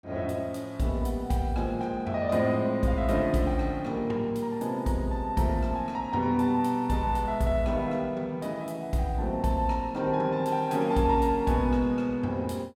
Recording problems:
none

